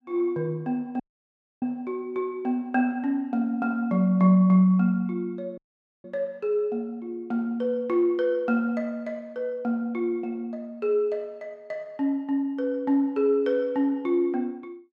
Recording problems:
audio cutting out; at 1 s for 0.5 s and at 5.5 s

